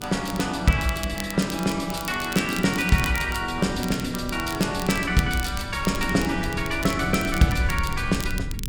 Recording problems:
mains hum; 50 Hz, harmonics up to 450 Hz, SNR 20 dB
rumble; below 110 Hz, SNR 13 dB
crackle; vinyl, SNR 13 dB

